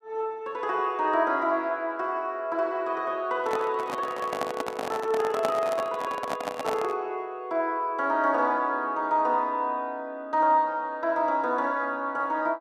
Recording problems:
handling noise; from 3.5 to 7 s; peak +1 dB vs average level

